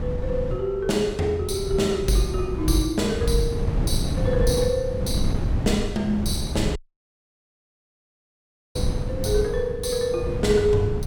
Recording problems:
wind on the microphone; below 160 Hz, SNR 4 dB
dropout; at 7 s for 2 s

